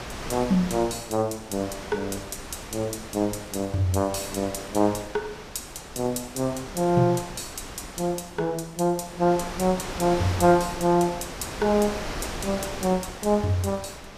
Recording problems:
wind noise; below 2.5 kHz, SNR 11 dB

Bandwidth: 14.5 kHz